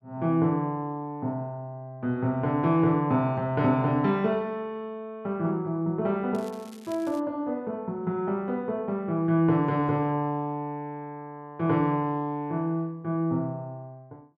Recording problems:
crackle; at 6.5 s; loose cable, SNR 24 dB

